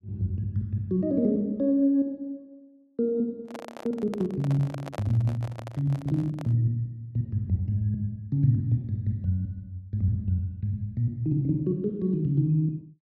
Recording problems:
handling noise; from 3.5 to 6.5 s; peak -6 dB vs average level

